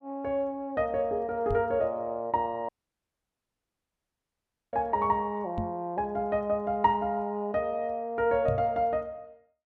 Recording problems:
knock on the microphone; at 1.5 s, at 5.5 s and at 8.5 s; peak 0 dB vs average level
audio cutting out; at 2.5 s for 2 s

